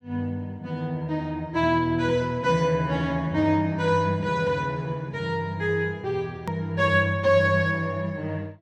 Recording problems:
click at an edit; at 6.5 s

